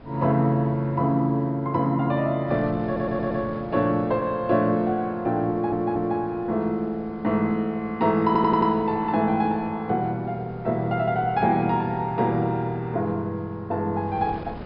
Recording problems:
treble cut off; nothing above 5.5 kHz
wind noise; below 610 Hz, SNR 21 dB
stutter; at 3 s, at 5.5 s and at 8.5 s

